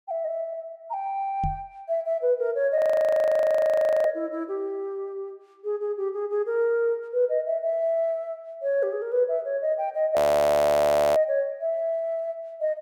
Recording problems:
microphone bump; at 1.5 s; peak -2 dB vs average level
frozen audio; at 3 s for 1.5 s and at 10 s for 1 s

